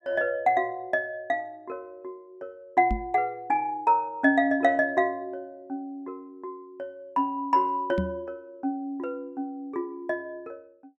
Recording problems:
microphone bump; at 3 s and at 8 s; peak +2 dB vs average level

